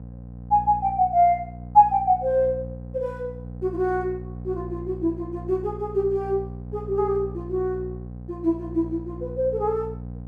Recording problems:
hum; 60 Hz, harmonics up to 780 Hz, SNR 13 dB

